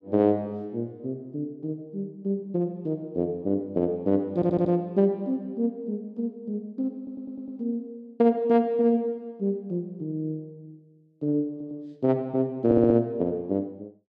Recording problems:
audio stuttering; 4 times, first at 4.5 s

